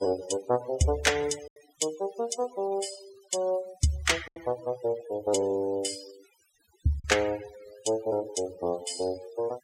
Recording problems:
noise reduction artefacts; signal-to-artefact ratio 16 dB
lost packets; 2% of the sound replaced, filled with silence

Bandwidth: 16 kHz